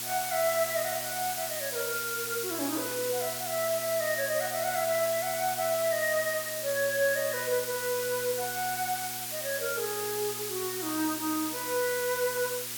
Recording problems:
hum; 60 Hz, harmonics up to 960 Hz, SNR 19 dB
background hiss; slope +3 dB per octave, SNR 2 dB

